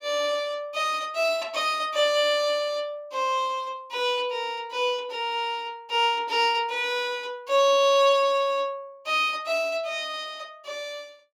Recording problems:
none

